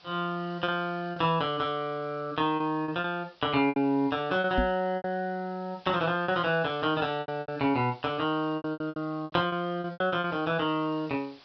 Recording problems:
low-pass filter; nothing above 5.5 kHz
hiss; SNR 27 dB
packet loss; 10% of the sound replaced, filled with repeated pitch periods
knock on the microphone; at 4.5 s; peak +3 dB vs average level

